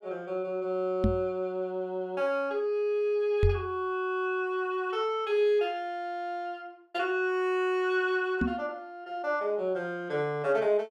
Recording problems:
knock on the microphone; at 1 s, at 3.5 s and at 8.5 s; peak +7 dB vs average level

